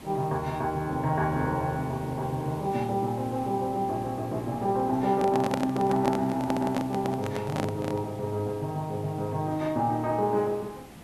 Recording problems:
background hiss; slope -5 dB per octave, SNR 18 dB
handling noise; from 5 to 8 s; peak +2 dB vs average level

